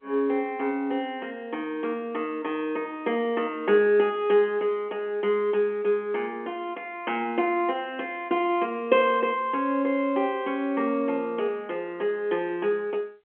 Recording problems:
telephone audio; 240 Hz to 3.3 kHz, G.711

